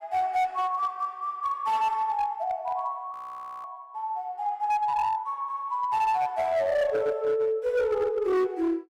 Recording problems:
distorted audio; hard clipping, uneven, signal-to-distortion ratio 12 dB
audio freezing; at 3 s for 0.5 s

